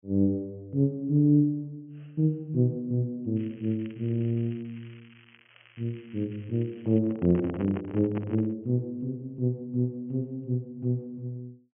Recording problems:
treble cut off; nothing above 3.1 kHz
crackle; from 3.5 to 7 s; loose cable, SNR 27 dB
microphone handling noise; from 7 to 8.5 s; peak -3 dB vs average level

